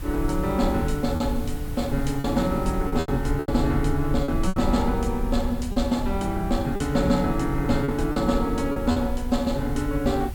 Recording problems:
hiss; SNR 20 dB
low-frequency rumble; below 74 Hz, SNR 7 dB
wind noise; below 310 Hz, SNR 19 dB
lost packets; 6% of the sound replaced, filled with repeated pitch periods

